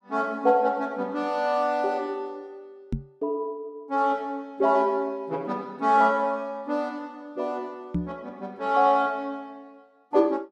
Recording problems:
microphone bump; at 3 s and at 8 s; peak +2 dB vs average level

